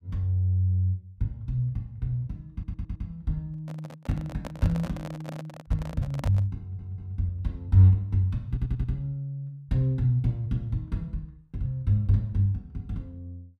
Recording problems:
stutter; at 2.5 s, at 6.5 s and at 8.5 s
handling noise; from 3.5 to 6.5 s; peak -3 dB vs average level

